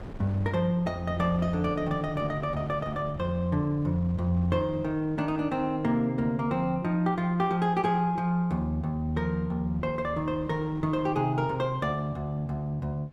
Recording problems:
wind on the microphone; below 400 Hz, SNR 19 dB

